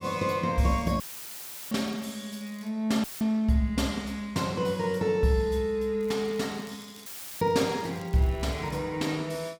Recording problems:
crackle; from 0.5 to 2.5 s and from 6 to 9 s; loose cable, SNR 26 dB
dropout; at 1 s for 0.5 s, at 3 s and at 7 s; filled with static

